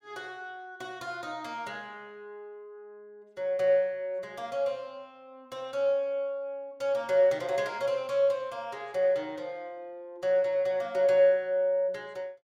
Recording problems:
none

